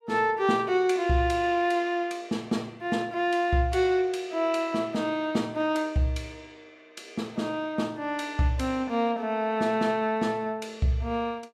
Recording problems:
none

